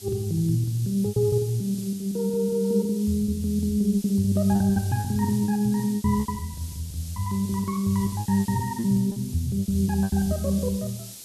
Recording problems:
background hiss; SNR 16 dB
packet loss; 11% of the sound replaced, filled with repeated pitch periods

